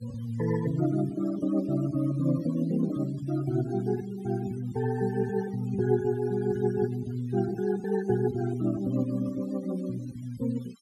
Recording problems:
noise reduction artefacts; signal-to-artefact ratio 24 dB

